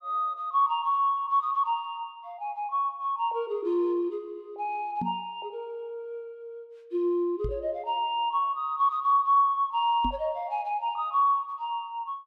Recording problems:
knock on the microphone; at 5 s, at 7.5 s and at 10 s; peak -2 dB vs average level

